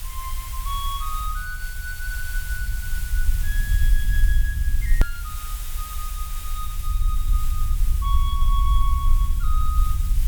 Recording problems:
hiss; slope +1 dB per octave, SNR 3 dB
low-frequency rumble; below 56 Hz, SNR -8 dB
click at an edit; at 5 s

